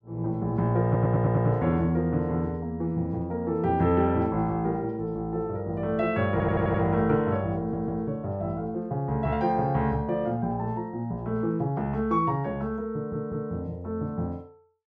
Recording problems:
stutter; 4 times, first at 1 s

